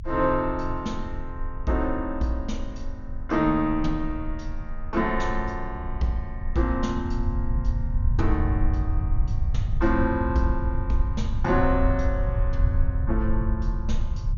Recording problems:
treble cut off; nothing above 6.9 kHz
low-frequency rumble; below 78 Hz, SNR 2 dB

